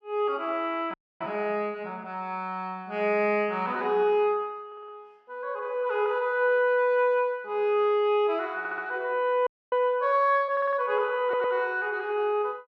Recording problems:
frozen audio; at 1 s and at 9.5 s
stutter; 4 times, first at 4.5 s

